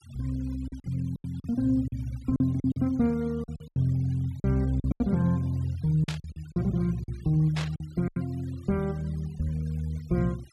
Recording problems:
denoising artefacts; signal-to-artefact ratio 26 dB
lost packets; 10% of the sound replaced, filled with silence
burst of static; at 6 s and at 7.5 s; peak -3 dB vs average level

